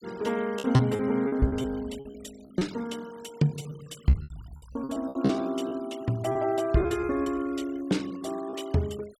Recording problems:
denoising artefacts; signal-to-artefact ratio 22 dB
lost packets; 12% of the sound replaced, filled with repeated pitch periods

